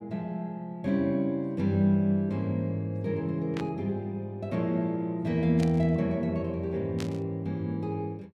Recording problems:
burst of static; at 3.5 s, at 5.5 s and at 7 s; peak -7 dB vs average level

